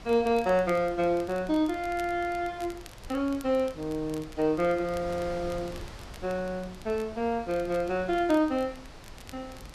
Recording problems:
wind noise; below 1 kHz, SNR 17 dB
crackle; vinyl, SNR 24 dB

